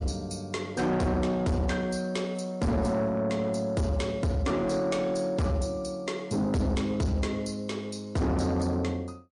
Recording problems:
lossy codec; MP3, log-spectral distance 2 dB, nothing above 10.1 kHz
distorted audio; soft clipping, signal-to-distortion ratio 7 dB

